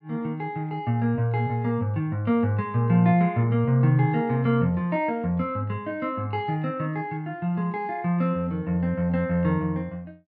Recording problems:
none

